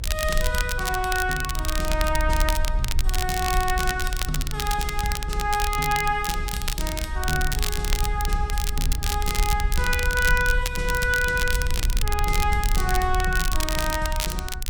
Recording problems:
rumble; below 66 Hz, SNR 3 dB
crackle; vinyl, SNR 5 dB

